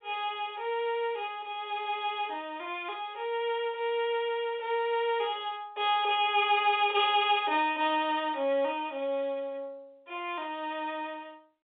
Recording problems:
phone line; 320 Hz to 3.6 kHz, G.711

